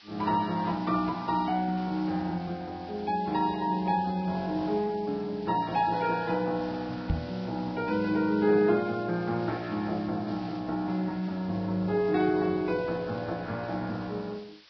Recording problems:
lossy codec; Vorbis, log-spectral distance 7 dB
hiss; SNR 23 dB
microphone thump; at 7 s; peak +3 dB vs average level

